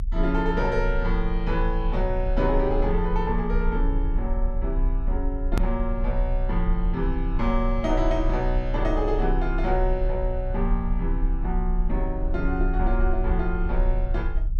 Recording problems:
low-frequency rumble; below 38 Hz, strongest tone 32 Hz, SNR 0 dB
hard cut with a click; at 5.5 s

